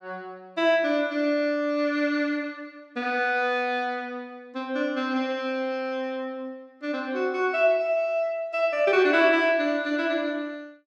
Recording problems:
none

